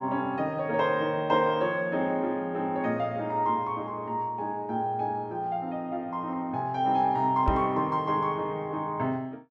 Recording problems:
microphone bump; at 7.5 s; peak +4 dB vs average level

